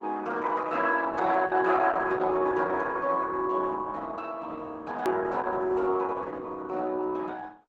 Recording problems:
lossy codec; Opus, log-spectral distance 3 dB, nothing above 17.7 kHz
click at an edit; at 5 s

